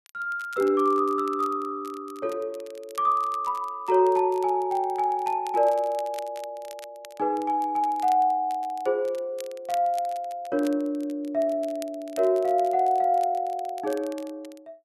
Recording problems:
crackling; vinyl, SNR 24 dB

